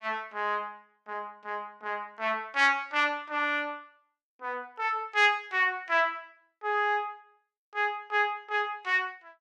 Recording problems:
none

